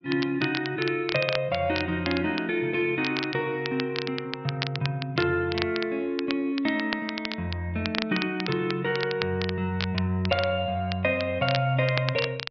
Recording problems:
treble cut off; nothing above 5.5 kHz
crackle; vinyl, SNR 8 dB

